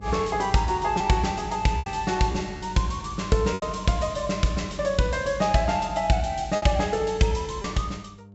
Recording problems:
treble cut off; nothing above 7.8 kHz
electrical hum; 50 Hz, harmonics up to 900 Hz, SNR 22 dB
packet loss; 4% of the sound replaced, filled with repeated pitch periods

